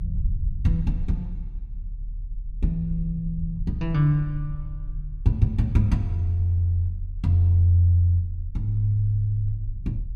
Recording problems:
low-frequency rumble; below 64 Hz, strongest tone 36 Hz, SNR 10 dB

